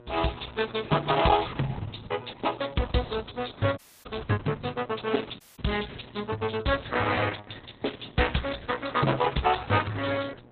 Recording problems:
codec artefacts; Opus, log-spectral distance 9 dB, nothing above 4 kHz
electrical hum; 60 Hz, harmonics up to 2 kHz, SNR 24 dB
dropout; at 4 s and at 5.5 s

